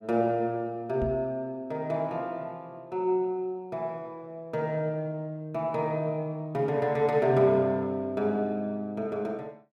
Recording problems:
knock on the microphone; at 1 s; peak 0 dB vs average level

